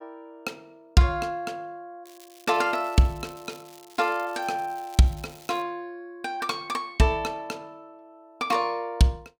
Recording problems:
crackle; from 2 to 5.5 s; loose cable, SNR 23 dB

